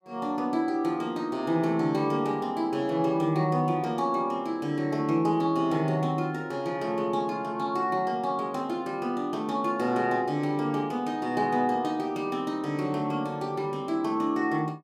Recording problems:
none

